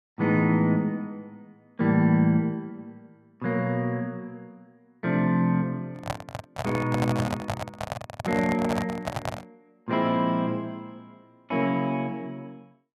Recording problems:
handling noise; from 6 to 9.5 s; peak +1 dB vs average level

